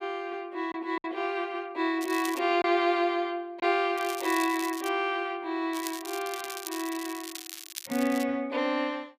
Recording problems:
packet loss; 1.4% of the sound replaced, filled with silence
crackle; at 2 s, at 4 s and from 5.5 to 8 s; loose cable, SNR 11 dB

